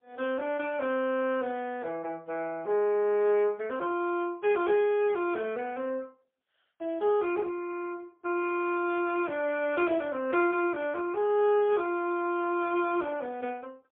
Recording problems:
telephone audio; 280 Hz to 3.3 kHz, AMR-NB, then MP3

